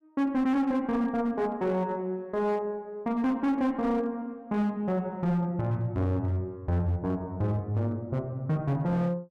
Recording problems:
distortion; hard clipping, signal-to-distortion ratio 12 dB

